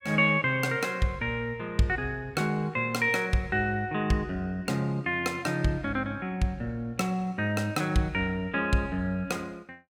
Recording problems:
none

